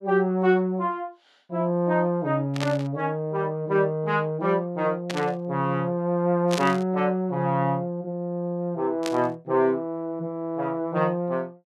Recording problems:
static burst; 4 times, first at 2.5 s; peak -1 dB vs average level

